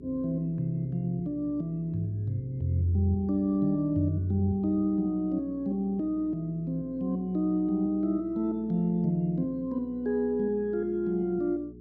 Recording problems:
mains hum; 60 Hz, harmonics up to 420 Hz, SNR 18 dB

